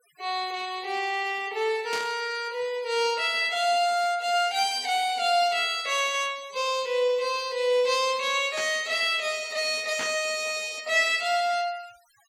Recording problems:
noise reduction artefacts; signal-to-artefact ratio 22 dB
static burst; at 2 s, at 8.5 s and at 10 s; peak -5 dB vs average level

